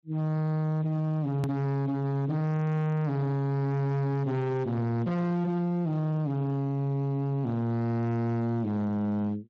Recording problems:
lossy compression; Speex, log-spectral distance 2 dB, nothing above 13.1 kHz
distorted audio; hard clipping, signal-to-distortion ratio 6 dB
hard cut with a click; at 1.5 s

